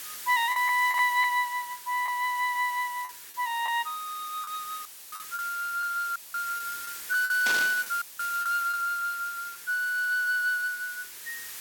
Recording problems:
background hiss; SNR 12 dB
packet loss; 5% of the sound replaced, filled with the last packet
dropout; at 5 s, at 6 s and at 8 s; filled with static
burst of static; at 7.5 s; peak +1 dB vs average level

